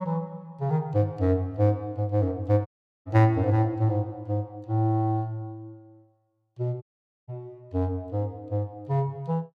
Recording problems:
dropout; at 2.5 s and at 7 s

